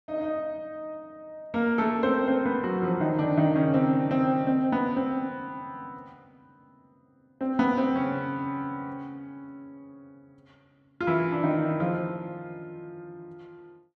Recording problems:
none

